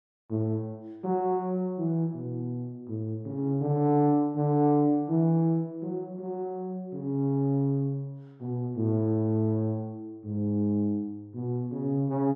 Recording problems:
none

